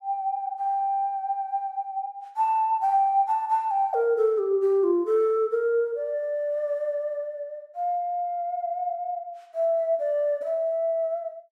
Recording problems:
none

